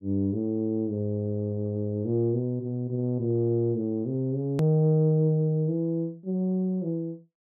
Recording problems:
click at an edit; at 4.5 s

